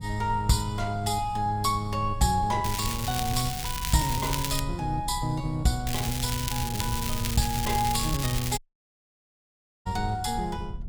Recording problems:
low-frequency rumble; below 110 Hz, SNR 9 dB
crackle; from 2.5 to 4.5 s and from 6 to 8.5 s; loose cable, SNR 4 dB
audio cutting out; at 8.5 s for 1.5 s

